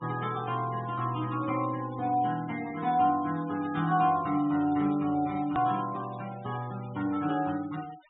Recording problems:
low-pass filter; nothing above 4 kHz
noise reduction artefacts; signal-to-artefact ratio 20 dB
hard cut with a click; at 5.5 s

